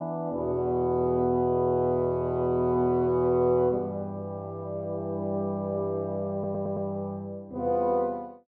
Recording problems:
stutter; at 6.5 s

